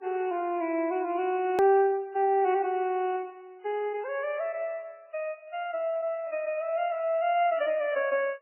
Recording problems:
lossy compression; MP3, log-spectral distance 2 dB, nothing above 17.7 kHz
edit click; at 1.5 s

